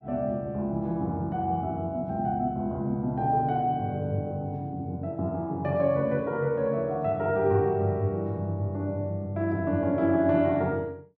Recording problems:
none

